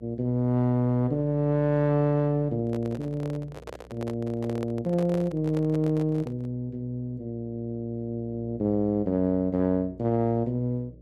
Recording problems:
electrical hum; 60 Hz, harmonics up to 600 Hz, SNR 23 dB
microphone handling noise; from 2.5 to 6.5 s; peak -7 dB vs average level

